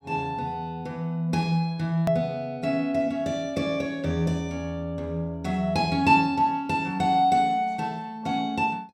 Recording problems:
edit click; at 2 s

